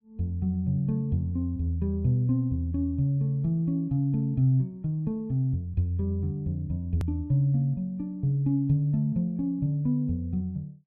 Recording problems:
edit click; at 7 s

